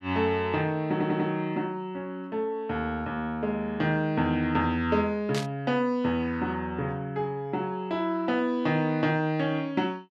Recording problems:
audio stuttering; at 1 s
burst of static; at 5.5 s; peak -2 dB vs average level

